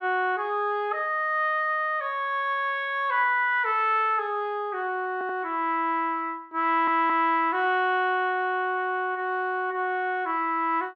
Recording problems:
stutter; at 5 s and at 6.5 s

